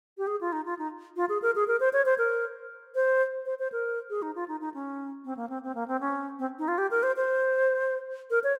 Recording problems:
none

